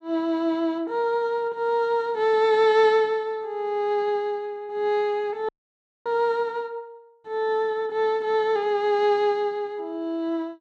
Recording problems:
audio cutting out; at 5.5 s for 0.5 s

